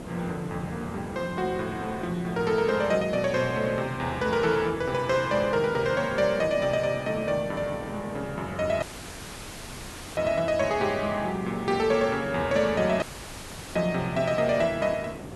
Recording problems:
background hiss; slope -8 dB per octave, SNR 12 dB
dropout; at 9 s for 1.5 s and at 13 s for 0.5 s

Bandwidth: 12 kHz